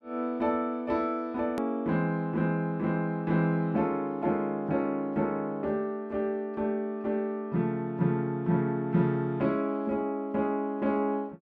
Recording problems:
edit click; at 1.5 s

